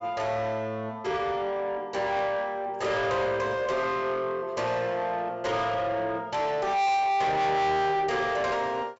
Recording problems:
treble cut off; nothing above 7.6 kHz
distortion; soft clipping, signal-to-distortion ratio 7 dB

